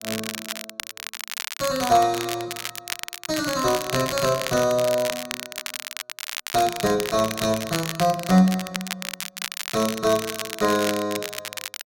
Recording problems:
crackle; vinyl, SNR 8 dB

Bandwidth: 16.5 kHz